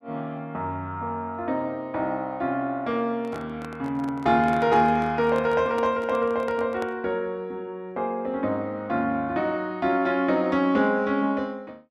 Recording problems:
microphone handling noise; from 3 to 7 s; peak -7 dB vs average level

